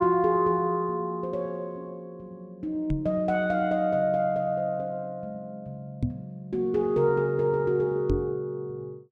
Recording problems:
microphone bump; at 3 s, at 6 s and at 8 s; peak +3 dB vs average level

